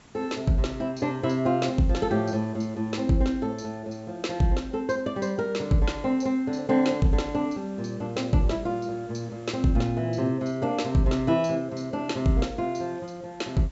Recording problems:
treble cut off; nothing above 7.6 kHz
background hiss; slope -3 dB per octave, SNR 27 dB

